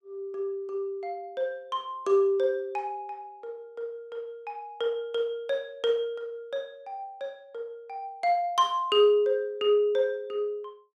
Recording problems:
none

